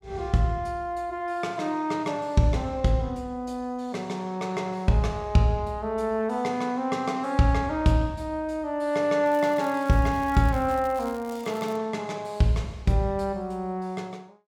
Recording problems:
crackle; from 9.5 to 12 s; loose cable, SNR 23 dB

